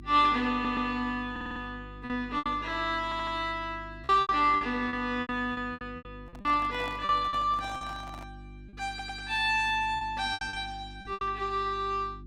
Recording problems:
hum; 50 Hz, harmonics up to 350 Hz, SNR 18 dB
lost packets; 10% of the sound replaced, filled with repeated pitch periods
stutter; 4 times, first at 0.5 s
handling noise; from 6.5 to 8.5 s; peak -10 dB vs average level

